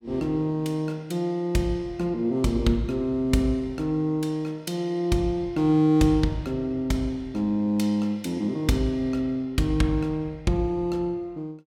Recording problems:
none

